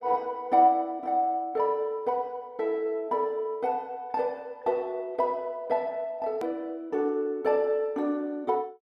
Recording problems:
click at an edit; at 6.5 s

